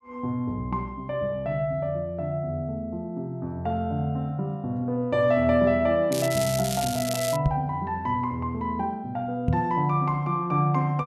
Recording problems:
crackling; from 6 to 7.5 s; loose cable, SNR 6 dB
microphone bump; at 7.5 s and at 9.5 s; peak +5 dB vs average level

